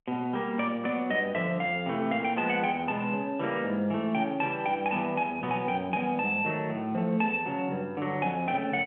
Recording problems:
phone line; 190 Hz to 3.5 kHz, G.711

